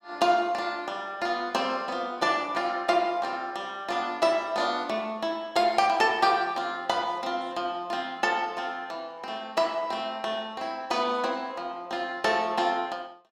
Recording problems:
none

